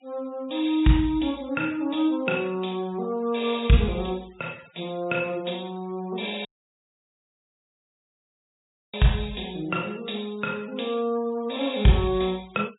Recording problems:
low-pass filter; nothing above 4 kHz
noise reduction artefacts; signal-to-artefact ratio 24 dB
dropout; at 6.5 s for 2.5 s

